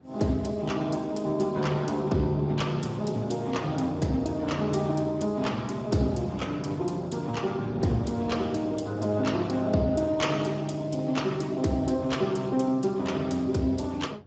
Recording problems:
codec artefacts; Speex, log-spectral distance 4 dB, nothing above 7.6 kHz
wind on the microphone; below 420 Hz, SNR 20 dB

